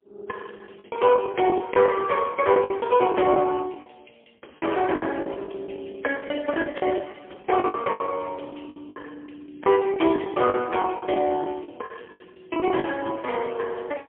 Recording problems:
phone line; 260 Hz to 2.8 kHz, AMR-NB, then MP3
packet loss; 14% of the sound replaced, filled with the last packet

